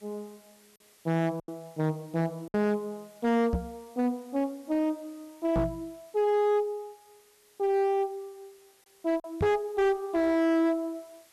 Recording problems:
distortion; hard clipping, signal-to-distortion ratio 10 dB
hiss; slope 0 dB per octave, SNR 29 dB
lost packets; 2% of the sound replaced, filled with silence
microphone thump; at 3.5 s, at 5.5 s and at 9.5 s; peak +3 dB vs average level

